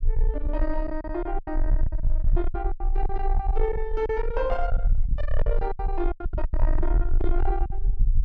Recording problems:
distortion; soft clipping, signal-to-distortion ratio 8 dB
low-frequency rumble; below 42 Hz, strongest tone 24 Hz, SNR -2 dB
packet loss; 13% of the sound replaced, filled with silence

